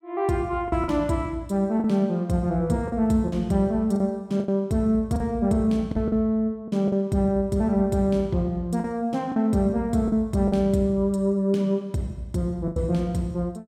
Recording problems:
packet loss; 6% of the sound replaced, filled with the last packet

